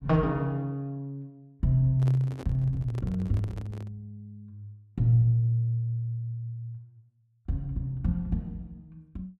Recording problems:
handling noise; from 2 to 4 s; peak -8 dB vs average level

